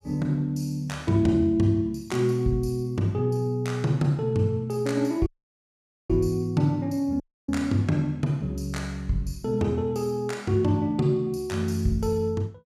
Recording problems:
dropout; at 5.5 s for 1 s and at 7 s

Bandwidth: 15 kHz